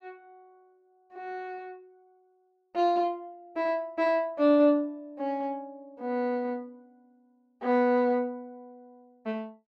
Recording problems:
none

